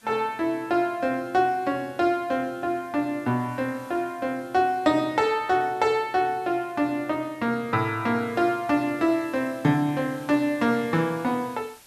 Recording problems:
background hiss; slope 0 dB per octave, SNR 27 dB

